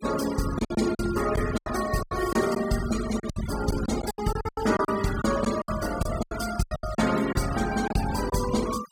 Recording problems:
noise reduction artefacts; signal-to-artefact ratio 11 dB
lost packets; 13% of the sound replaced, filled with silence

